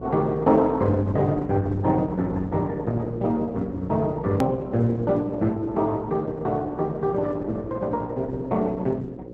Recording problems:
lossy codec; Opus, log-spectral distance 2 dB, nothing above 13.1 kHz
electrical hum; 60 Hz, harmonics up to 660 Hz, SNR 14 dB
click at an edit; at 4.5 s

